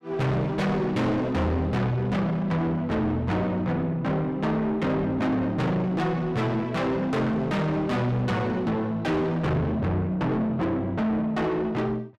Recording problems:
distorted audio; soft clipping, signal-to-distortion ratio 7 dB

